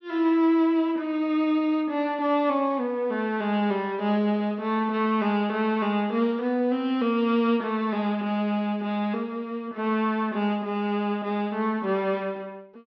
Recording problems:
low-pass filter; nothing above 5.9 kHz

